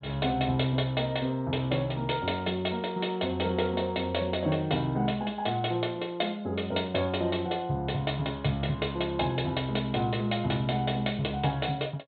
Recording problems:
low-pass filter; nothing above 4 kHz

